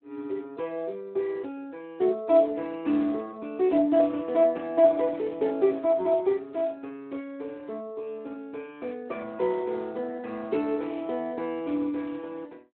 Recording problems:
phone line; 260 Hz to 3.5 kHz, Speex

